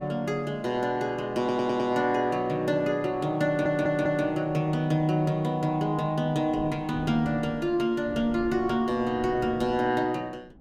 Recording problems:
wind noise; below 350 Hz, SNR 20 dB
audio stuttering; at 1.5 s and at 3.5 s

